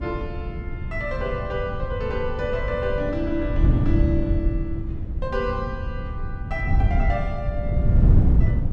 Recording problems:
wind on the microphone; below 120 Hz, SNR -4 dB

